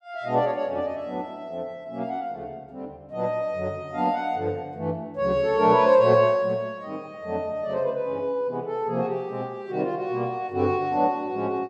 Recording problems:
none

